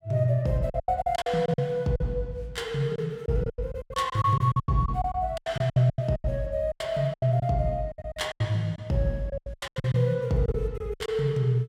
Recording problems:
lost packets; 17% of the sound replaced, filled with silence

